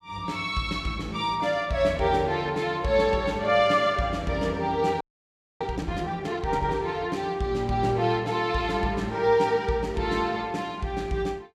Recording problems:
frozen audio; at 5 s for 0.5 s

